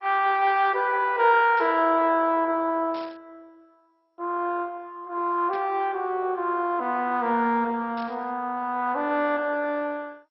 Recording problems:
codec artefacts; MP2, log-spectral distance 3 dB, nothing above 4.8 kHz
burst of static; 4 times, first at 1.5 s; peak -15 dB vs average level

